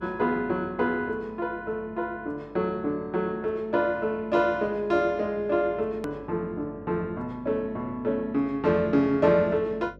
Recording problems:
hum; 50 Hz, harmonics up to 600 Hz, SNR 24 dB
edit click; at 6 s

